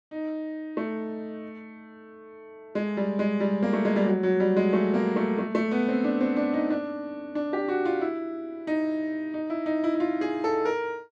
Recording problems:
none

